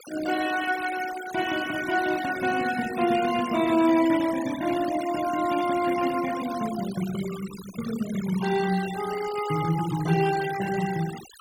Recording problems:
denoising artefacts; signal-to-artefact ratio 13 dB

